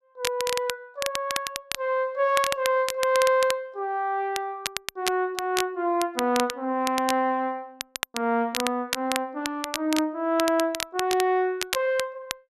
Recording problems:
crackling; vinyl, SNR 7 dB

